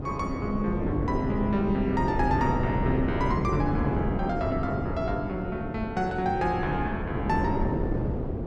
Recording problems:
wind on the microphone; below 380 Hz, SNR 1 dB

